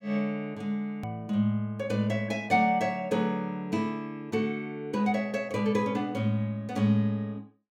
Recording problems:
click at an edit; at 1 s

